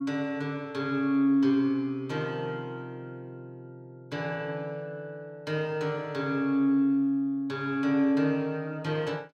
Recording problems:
none

